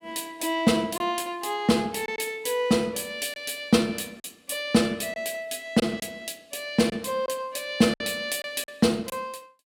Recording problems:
packet loss; 4% of the sound replaced, filled with silence

